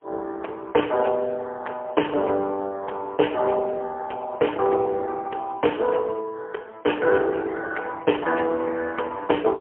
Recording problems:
telephone audio; 340 Hz to 3.6 kHz, AMR-NB, then MP3

